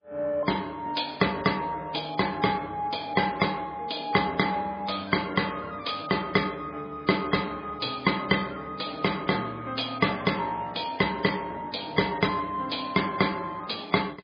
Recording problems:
codec artefacts; MP3, log-spectral distance 6 dB

